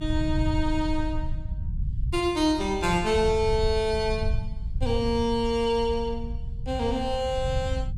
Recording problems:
low-frequency rumble; below 94 Hz, SNR 6 dB

